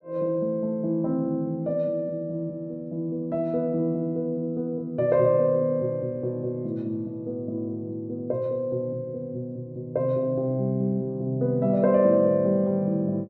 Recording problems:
none

